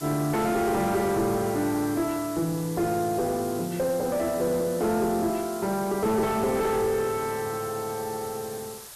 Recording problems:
distortion; soft clipping, signal-to-distortion ratio 6 dB
background hiss; SNR 14 dB

